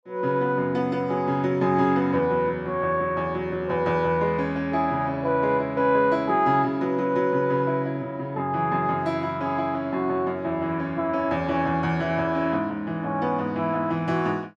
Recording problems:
none

